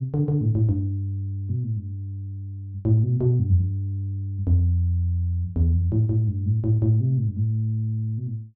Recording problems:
none

